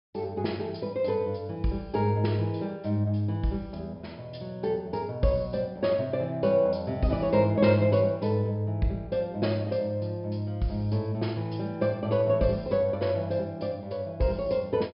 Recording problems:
treble cut off; nothing above 5.5 kHz

